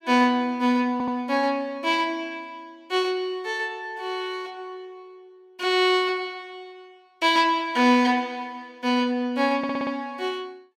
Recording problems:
stutter; at 1 s and at 9.5 s

